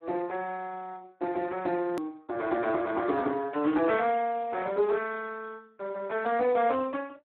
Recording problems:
telephone audio; 240 Hz to 2.7 kHz, Speex
edit click; at 2 s

